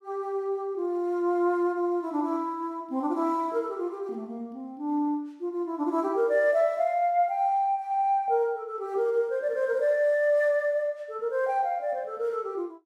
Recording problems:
none

